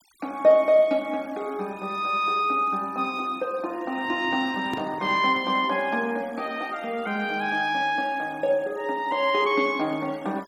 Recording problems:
noise reduction artefacts; signal-to-artefact ratio 26 dB
handling noise; from 4 to 5.5 s; peak -6 dB vs average level

